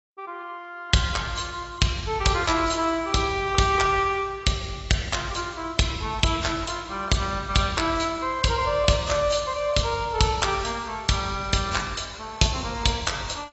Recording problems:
lossy compression; AAC, log-spectral distance 5 dB, nothing above 7.8 kHz

